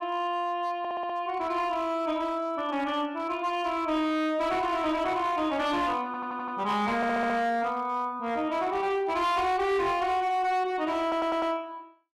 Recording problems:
distortion; hard clipping, signal-to-distortion ratio 11 dB
stutter; 4 times, first at 1 s

